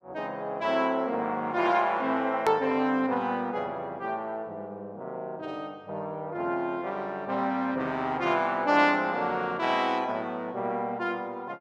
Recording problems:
edit click; at 2.5 s

